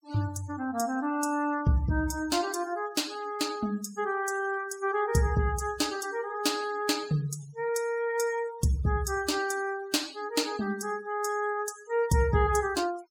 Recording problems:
noise reduction artefacts; signal-to-artefact ratio 17 dB

